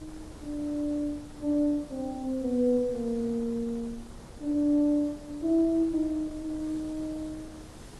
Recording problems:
codec artefacts; AAC, log-spectral distance 2 dB
background hiss; slope +2 dB per octave, SNR 26 dB
wind noise; below 390 Hz, SNR 19 dB

